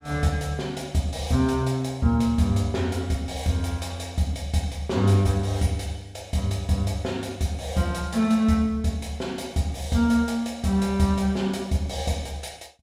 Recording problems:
none

